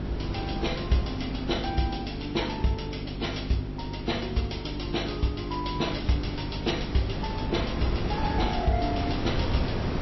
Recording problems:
codec artefacts; MP3, log-spectral distance 6 dB, nothing above 5.7 kHz
electrical hum; 50 Hz, harmonics up to 400 Hz, SNR 7 dB
wind on the microphone; below 440 Hz, SNR 4 dB

